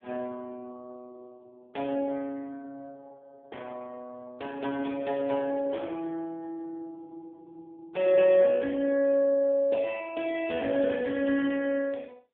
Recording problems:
telephone audio; 260 Hz to 3.2 kHz, AMR-NB

